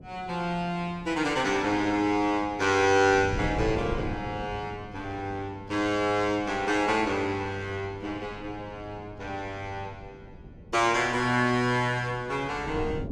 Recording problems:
wind noise; below 260 Hz, SNR 15 dB

